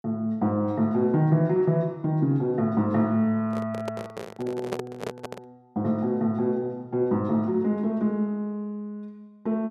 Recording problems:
handling noise; from 3.5 to 5.5 s; peak -1 dB vs average level

